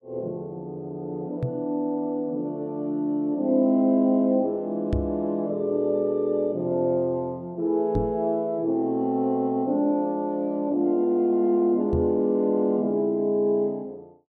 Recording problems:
microphone thump; 4 times, first at 1.5 s; peak +1 dB vs average level

